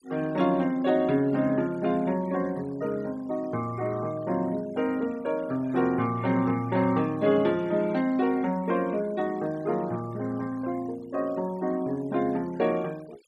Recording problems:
denoising artefacts; signal-to-artefact ratio 24 dB

